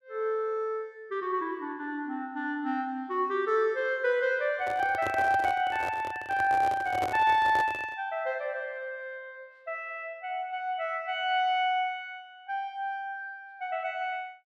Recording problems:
handling noise; from 4.5 to 8 s; peak 0 dB vs average level

